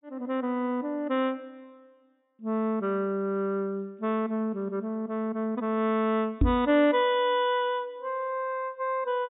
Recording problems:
treble cut off; nothing above 4 kHz
knock on the microphone; at 6.5 s; peak +7 dB vs average level

